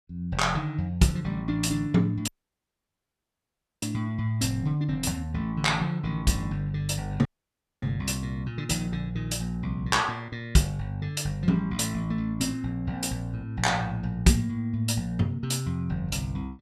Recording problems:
dropout; at 2.5 s for 1.5 s and at 7.5 s for 0.5 s

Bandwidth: 14 kHz